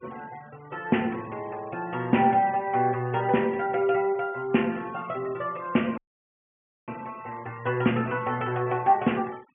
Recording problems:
low-pass filter; nothing above 3.1 kHz
denoising artefacts; signal-to-artefact ratio 23 dB
audio cutting out; at 6 s for 1 s

